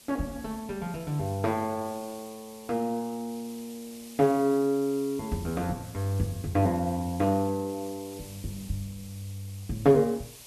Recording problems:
background hiss; SNR 18 dB

